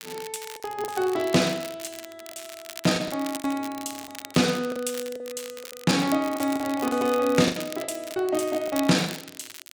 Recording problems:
crackling; vinyl, SNR 14 dB
packet loss; 10% of the sound replaced, filled with the last packet

